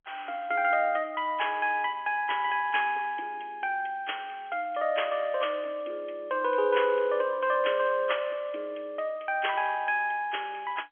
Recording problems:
phone line; 280 Hz to 3.3 kHz, G.711

